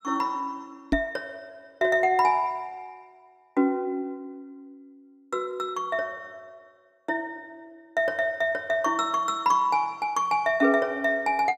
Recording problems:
microphone thump; at 1 s; peak +5 dB vs average level

